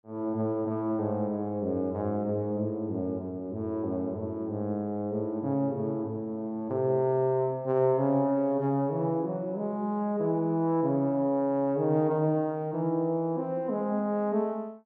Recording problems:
none

